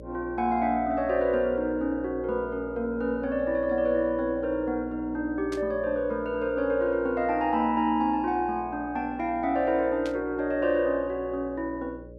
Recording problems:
electrical hum; 60 Hz, harmonics up to 600 Hz, SNR 17 dB
static burst; at 5.5 s and at 10 s; peak -10 dB vs average level

